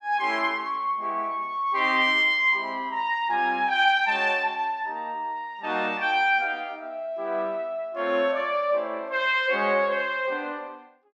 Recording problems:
none

